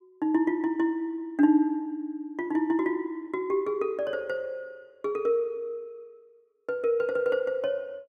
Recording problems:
none

